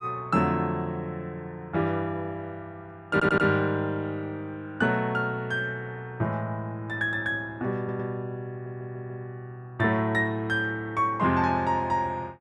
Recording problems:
stutter; at 3 s, at 8 s and at 8.5 s

